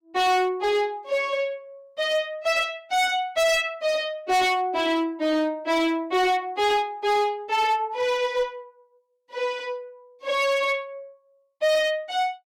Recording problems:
distorted audio; hard clipping, signal-to-distortion ratio 8 dB

